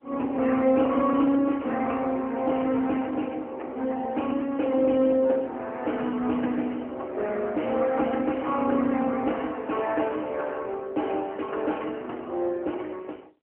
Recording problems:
telephone audio; 240 Hz to 3.2 kHz, AMR-NB

